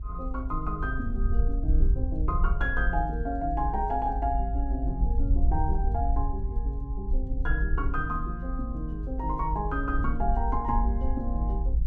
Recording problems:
low-frequency rumble; below 56 Hz, SNR -2 dB

